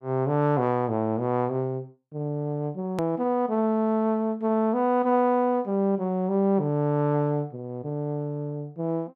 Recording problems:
edit click; at 3 s

